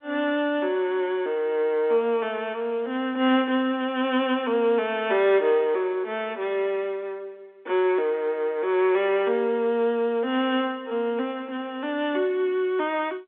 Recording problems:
phone line; 220 Hz to 3.6 kHz, G.711

